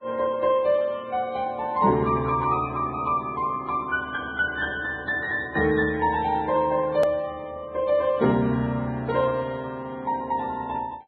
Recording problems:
treble cut off; nothing above 4.2 kHz
lossy codec; Vorbis, log-spectral distance 2 dB
hard cut with a click; at 7 s

